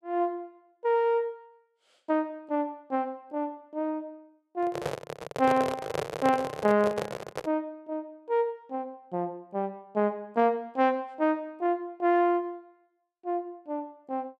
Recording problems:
handling noise; from 4.5 to 7.5 s; peak +3 dB vs average level

